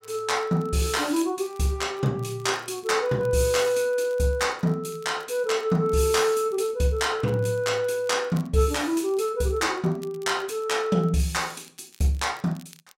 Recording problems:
crackling; vinyl, SNR 28 dB

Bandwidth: 16 kHz